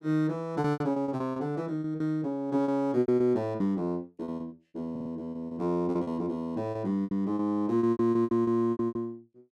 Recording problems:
packet loss; 17% of the sound replaced, filled with repeated pitch periods
stutter; at 5 s

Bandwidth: 13 kHz